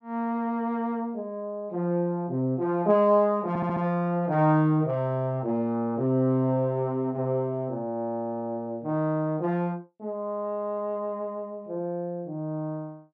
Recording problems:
stutter; at 3.5 s

